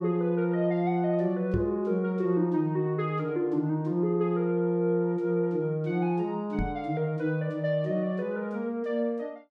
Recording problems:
microphone bump; at 1.5 s and at 6.5 s; peak 0 dB vs average level

